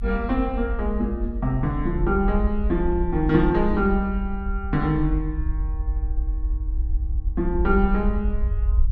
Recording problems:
low-frequency rumble; below 58 Hz, SNR 3 dB

